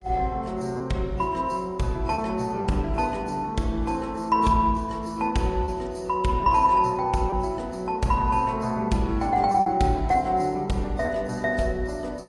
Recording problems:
codec artefacts; AAC, log-spectral distance 2 dB, nothing above 10.7 kHz
lost packets; 2% of the sound replaced, filled with repeated pitch periods

